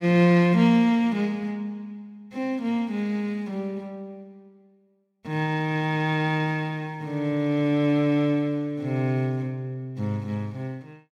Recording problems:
none

